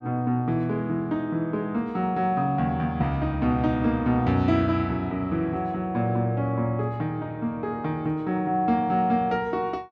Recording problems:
none

